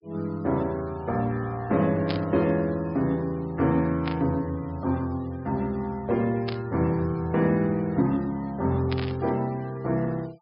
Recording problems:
treble cut off; nothing above 5.5 kHz
denoising artefacts; signal-to-artefact ratio 27 dB
burst of static; 4 times, first at 2 s; peak -3 dB vs average level

